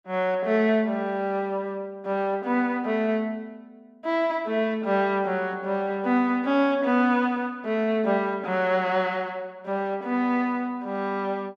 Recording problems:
none

